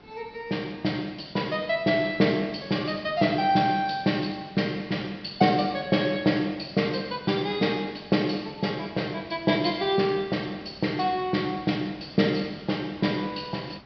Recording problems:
low-pass filter; nothing above 5.5 kHz
hiss; SNR 23 dB

